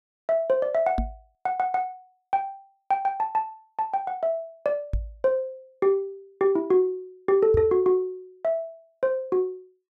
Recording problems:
microphone thump; at 1 s, at 5 s and at 7.5 s; peak +1 dB vs average level

